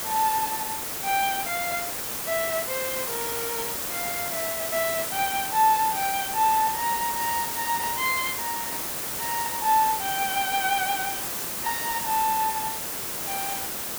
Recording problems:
background hiss; slope -2 dB per octave, SNR 1 dB

